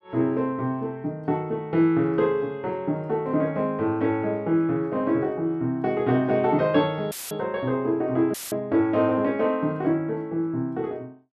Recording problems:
dropout; at 7 s and at 8.5 s; filled with static

